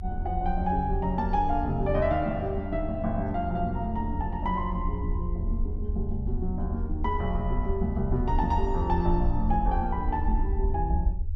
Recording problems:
rumble; below 78 Hz, SNR 3 dB

